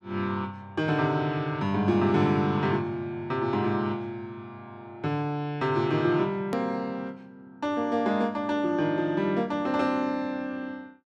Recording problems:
edit click; at 6.5 s

